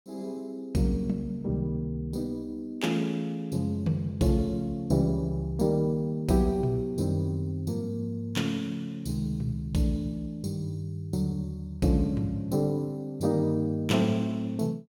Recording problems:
none

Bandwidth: 18 kHz